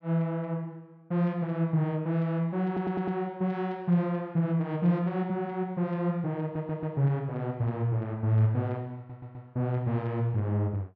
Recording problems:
audio stuttering; at 2.5 s, at 6.5 s and at 9 s

